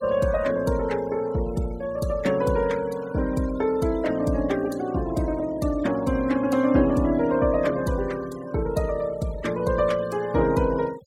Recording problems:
denoising artefacts; signal-to-artefact ratio 20 dB

